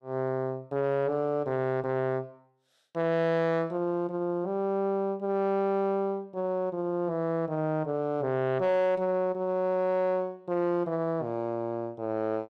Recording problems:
distortion; soft clipping, signal-to-distortion ratio 12 dB

